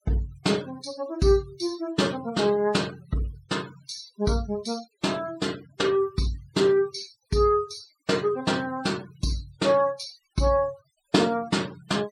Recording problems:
noise reduction artefacts; signal-to-artefact ratio 20 dB

